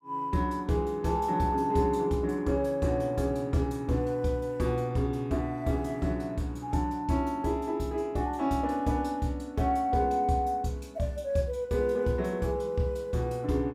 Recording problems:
none

